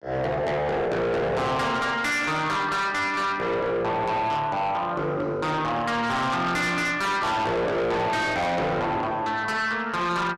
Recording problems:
distorted audio; soft clipping, signal-to-distortion ratio 7 dB

